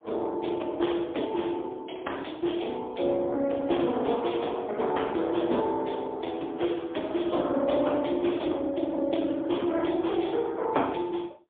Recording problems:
phone line; 240 Hz to 3.5 kHz, AMR-NB, then MP3

